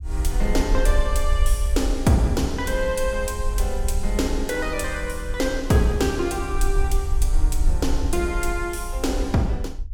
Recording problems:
low-frequency rumble; below 54 Hz, SNR 3 dB

